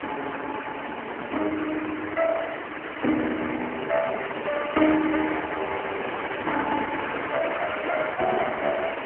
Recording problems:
phone line; 240 Hz to 2.1 kHz, AMR-NB
background hiss; SNR 5 dB

